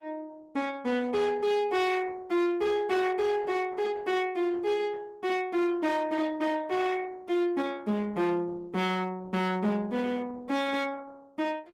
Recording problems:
lossy compression; Opus, log-spectral distance 3 dB, nothing above 20.1 kHz
distortion; hard clipping, uneven, signal-to-distortion ratio 11 dB

